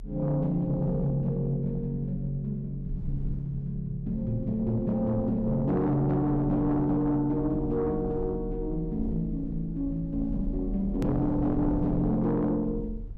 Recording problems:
distorted audio; soft clipping, signal-to-distortion ratio 11 dB
low-frequency rumble; below 76 Hz, strongest tone 38 Hz, SNR 11 dB
click at an edit; at 11 s

